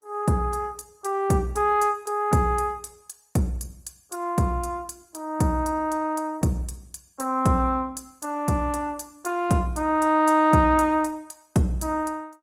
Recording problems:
lossy compression; Opus, then Opus, log-spectral distance 3 dB

